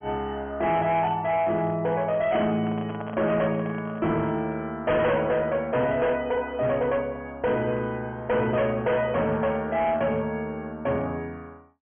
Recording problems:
treble missing; nothing above 3.3 kHz
distorted audio; hard clipping, signal-to-distortion ratio 11 dB
handling noise; from 2.5 to 4 s; peak -8 dB vs average level

